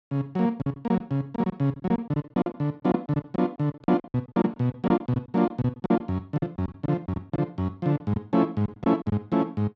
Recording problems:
packet loss; 15% of the sound replaced, filled with silence

